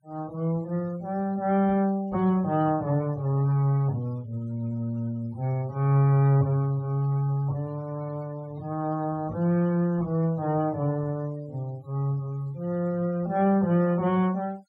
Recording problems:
denoising artefacts; signal-to-artefact ratio 27 dB

